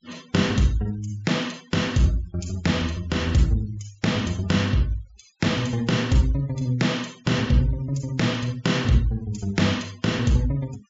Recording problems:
low-pass filter; nothing above 7.4 kHz
denoising artefacts; signal-to-artefact ratio 23 dB

